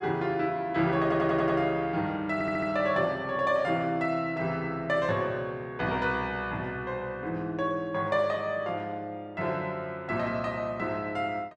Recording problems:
audio stuttering; at 1 s and at 2.5 s

